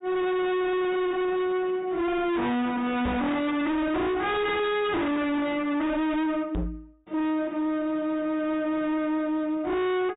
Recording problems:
treble cut off; nothing above 4 kHz
distortion; hard clipping, signal-to-distortion ratio 6 dB
microphone bump; at 3 s and at 6.5 s; peak +4 dB vs average level

